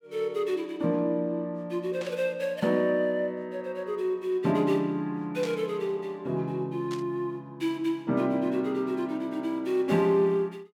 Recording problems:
burst of static; at 2 s, at 5.5 s and at 7 s; peak -8 dB vs average level

